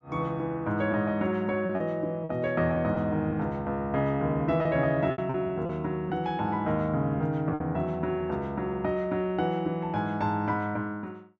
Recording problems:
packet loss; 4% of the sound replaced, filled with repeated pitch periods

